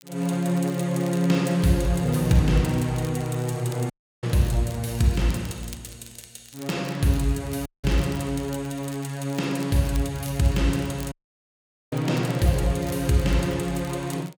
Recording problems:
crackle; vinyl, SNR 22 dB
dropout; at 4 s, at 7.5 s and at 11 s for 1 s

